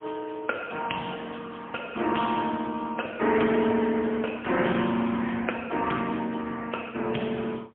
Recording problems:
telephone audio; 190 Hz to 3.3 kHz, AMR-NB, then MP3

